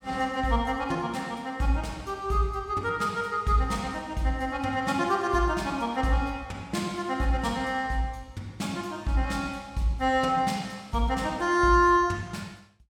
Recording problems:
none

